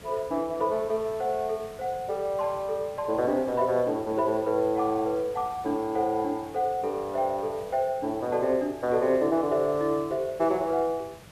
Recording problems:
background hiss; slope -4 dB per octave, SNR 21 dB

